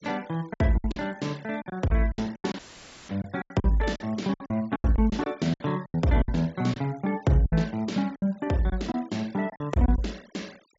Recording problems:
treble missing; nothing above 8 kHz
noise reduction artefacts; signal-to-artefact ratio 25 dB
lost packets; 14% of the sound replaced, filled with silence
dropout; at 2.5 s for 0.5 s; filled with static

